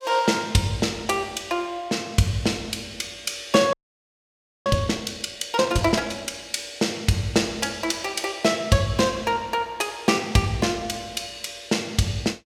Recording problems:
audio freezing; at 3.5 s for 1 s

